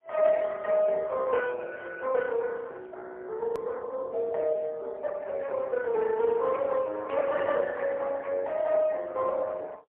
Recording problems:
phone line; 370 Hz to 3.6 kHz, AMR-NB, then MP3
click at an edit; at 3.5 s

